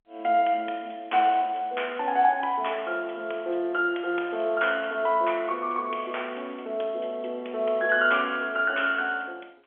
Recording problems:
phone line; 300 Hz to 3.4 kHz, G.711

